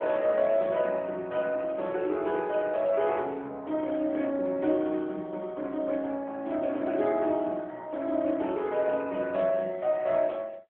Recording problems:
phone line; 240 Hz to 3.4 kHz, AMR-NB

